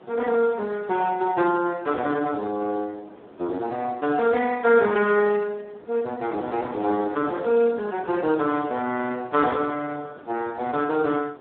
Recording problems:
telephone audio; 220 Hz to 2.7 kHz, Speex
wind noise; below 760 Hz, SNR 20 dB

